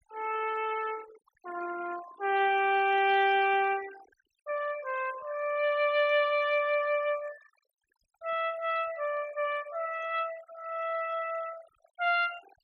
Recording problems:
noise reduction artefacts; signal-to-artefact ratio 19 dB

